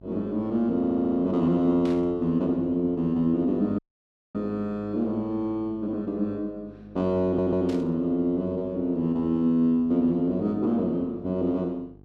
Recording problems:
hum; 50 Hz, harmonics up to 850 Hz, SNR 24 dB
audio stuttering; at 1 s and at 7 s
static burst; at 2 s and at 7.5 s; peak -13 dB vs average level
audio cutting out; at 4 s for 0.5 s

